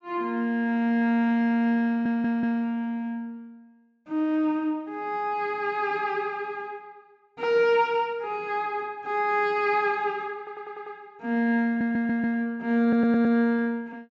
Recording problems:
low-pass filter; nothing above 8 kHz
audio stuttering; 4 times, first at 2 s

